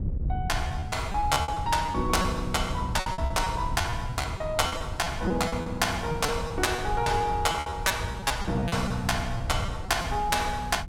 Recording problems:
wind on the microphone; below 110 Hz, SNR 7 dB
lost packets; 12% of the sound replaced, filled with repeated pitch periods

